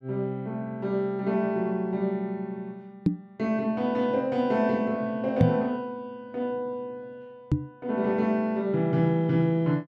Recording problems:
microphone bump; at 3 s, at 5.5 s and at 7.5 s; peak +9 dB vs average level

